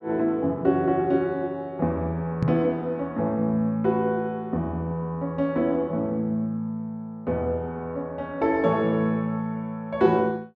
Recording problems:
microphone bump; at 2.5 s; peak +6 dB vs average level

